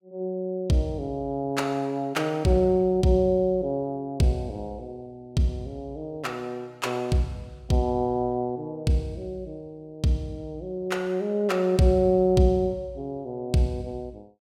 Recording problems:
none

